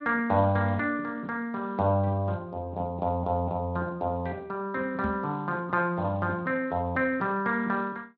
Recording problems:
codec artefacts; Speex, log-spectral distance 2 dB
knock on the microphone; at 5 s; peak 0 dB vs average level

